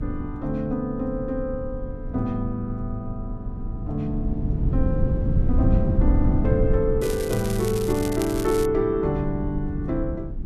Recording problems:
low-frequency rumble; below 120 Hz, SNR 2 dB
crackle; from 7 to 8.5 s; loose cable, SNR 10 dB

